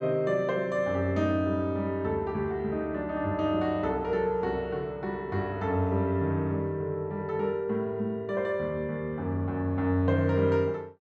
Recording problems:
none

